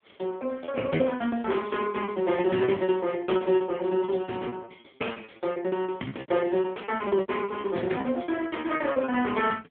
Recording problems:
phone line; 190 Hz to 3.4 kHz, AMR-NB
packet loss; 18% of the sound replaced, filled with repeated pitch periods

